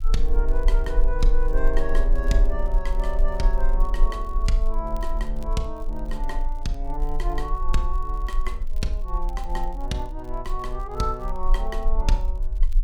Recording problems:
low-frequency rumble; below 36 Hz, strongest tone 22 Hz, SNR -4 dB
crackle; vinyl, SNR 26 dB

